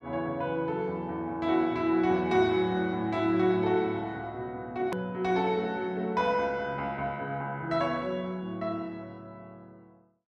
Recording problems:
hard cut with a click; at 5 s

